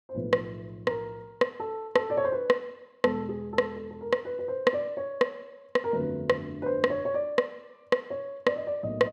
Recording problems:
none

